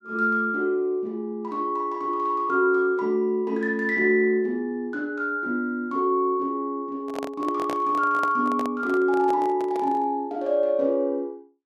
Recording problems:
microphone handling noise; from 7 to 10 s; peak -4 dB vs average level

